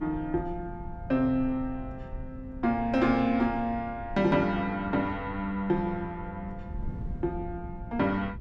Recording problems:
wind noise; below 130 Hz, SNR 13 dB

